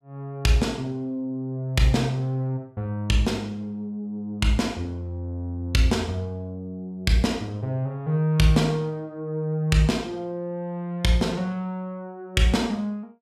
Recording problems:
none

